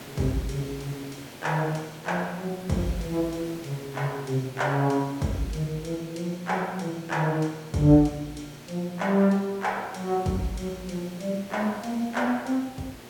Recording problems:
hum; 60 Hz, harmonics up to 1.4 kHz, SNR 25 dB
background hiss; slope -4 dB per octave, SNR 17 dB

